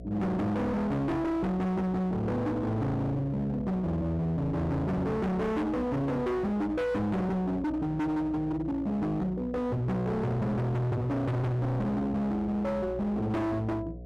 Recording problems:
distortion; hard clipping, signal-to-distortion ratio 6 dB
electrical hum; 60 Hz, harmonics up to 720 Hz, SNR 15 dB

